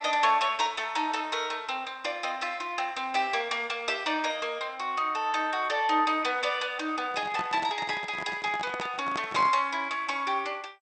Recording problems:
lossy codec; MP2, log-spectral distance 3 dB, nothing above 8.5 kHz
microphone handling noise; from 7 to 9.5 s; peak -4 dB vs average level

